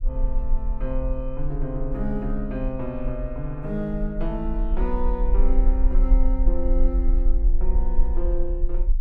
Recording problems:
low-frequency rumble; below 40 Hz, strongest tone 20 Hz, SNR -5 dB

